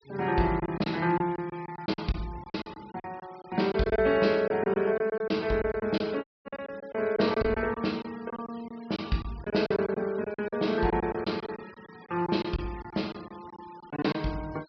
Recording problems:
low-pass filter; nothing above 5.5 kHz
denoising artefacts; signal-to-artefact ratio 22 dB
lost packets; 13% of the sound replaced, filled with silence
dropout; at 6 s

